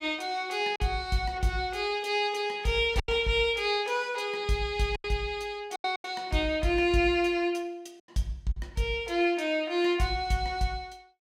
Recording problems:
lost packets; 4% of the sound replaced, filled with silence

